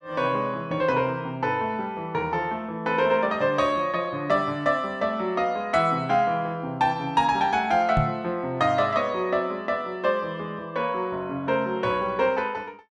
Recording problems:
knock on the microphone; at 8 s; peak +3 dB vs average level

